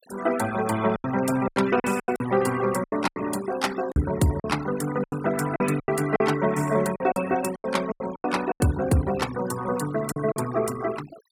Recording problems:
noise reduction artefacts; signal-to-artefact ratio 15 dB
lost packets; 11% of the sound replaced, filled with silence

